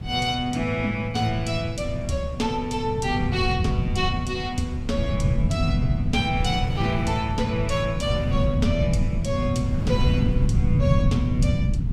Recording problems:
low-frequency rumble; below 160 Hz, SNR 0 dB
wind on the microphone; below 260 Hz, SNR 14 dB

